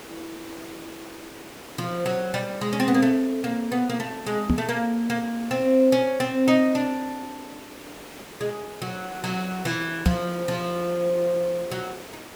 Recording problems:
hiss; slope -5 dB per octave, SNR 16 dB
microphone bump; at 4.5 s and at 10 s; peak +7 dB vs average level

